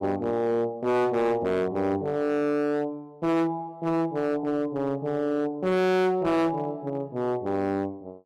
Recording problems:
distorted audio; hard clipping, signal-to-distortion ratio 7 dB

